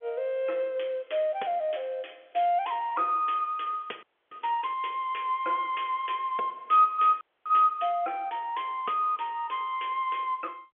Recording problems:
phone line; 300 Hz to 3.5 kHz, G.711
audio freezing; at 4 s and at 7 s

